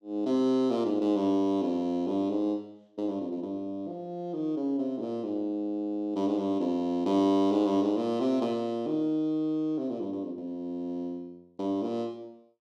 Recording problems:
none

